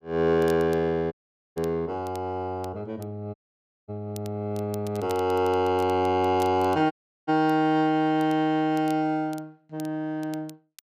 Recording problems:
crackle; vinyl, SNR 24 dB
audio cutting out; at 1 s, at 3.5 s for 0.5 s and at 7 s

